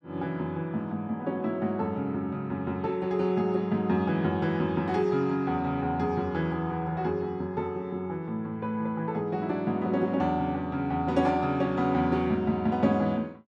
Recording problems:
none

